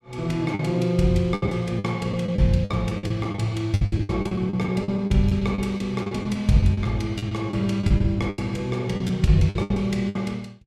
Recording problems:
lost packets; 14% of the sound replaced, filled with the last packet

